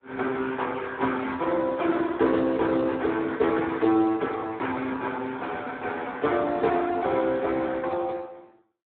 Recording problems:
phone line; 220 Hz to 3.9 kHz, Speex

